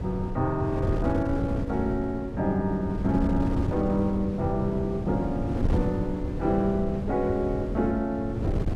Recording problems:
wind on the microphone; below 230 Hz, SNR 4 dB

